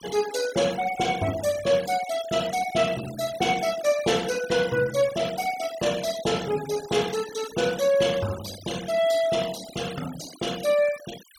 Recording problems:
denoising artefacts; signal-to-artefact ratio 14 dB

